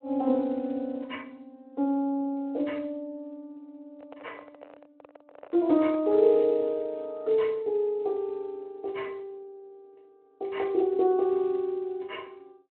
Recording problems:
telephone audio; 220 Hz to 3.5 kHz, Speex
handling noise; from 4 to 6.5 s; peak -13 dB vs average level

